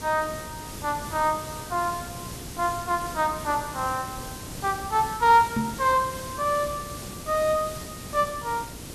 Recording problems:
electrical hum; 60 Hz, harmonics up to 1.6 kHz, SNR 22 dB
hiss; SNR 11 dB
microphone thump; at 5.5 s; peak +3 dB vs average level

